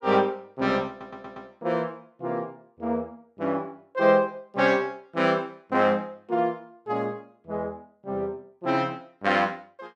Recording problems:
stutter; at 1 s

